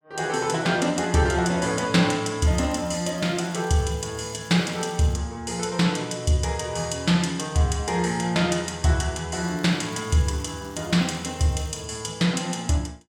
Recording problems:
crackling; from 2.5 to 5 s and from 9.5 to 12 s; loose cable, SNR 27 dB

